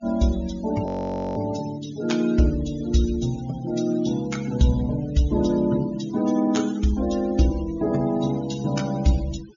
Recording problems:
treble cut off; nothing above 7.1 kHz
noise reduction artefacts; signal-to-artefact ratio 17 dB
frozen audio; at 1 s for 0.5 s

